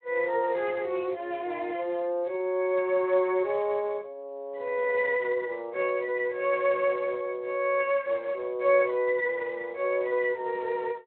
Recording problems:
telephone audio; 300 Hz to 3.4 kHz, Speex

